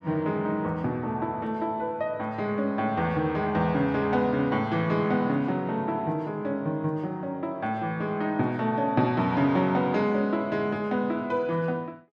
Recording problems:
none

